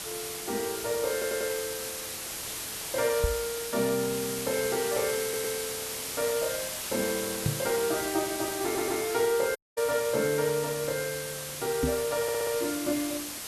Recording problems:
hiss; slope 0 dB per octave, SNR 4 dB
stutter; 4 times, first at 1 s
microphone bump; at 3 s, at 7.5 s and at 12 s; peak +5 dB vs average level
dropout; at 9.5 s

